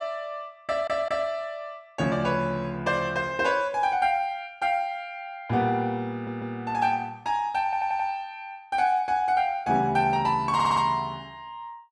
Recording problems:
stutter; 4 times, first at 0.5 s

